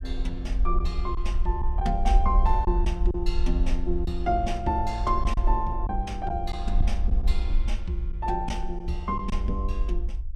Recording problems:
rumble; below 52 Hz, SNR -1 dB
lost packets; 3% of the sound replaced, filled with silence

